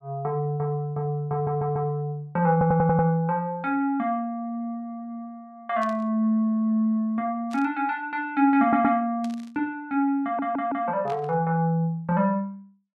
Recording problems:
audio stuttering; 4 times, first at 1.5 s
static burst; 4 times, first at 6 s; peak -14 dB vs average level

